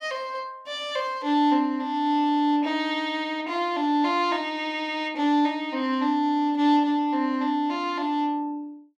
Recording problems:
none

